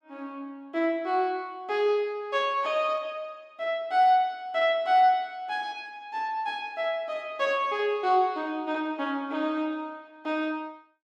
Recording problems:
none

